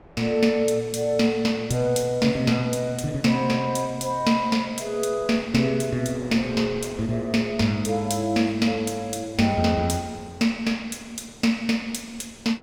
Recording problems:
wind on the microphone; below 740 Hz, SNR 22 dB

